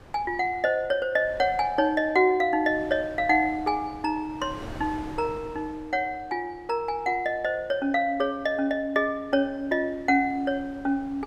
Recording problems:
wind noise; below 780 Hz, SNR 20 dB

